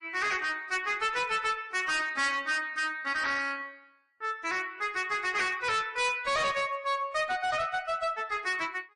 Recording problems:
codec artefacts; MP3, then AAC, log-spectral distance 3 dB, nothing above 10.4 kHz
distortion; hard clipping, uneven, signal-to-distortion ratio 7 dB

